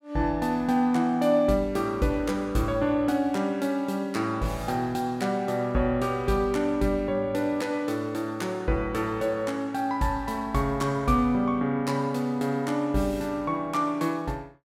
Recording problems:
none

